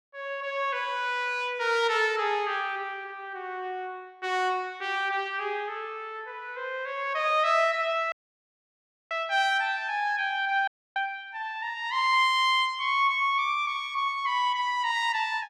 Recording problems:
audio cutting out; at 8 s for 1 s and at 11 s

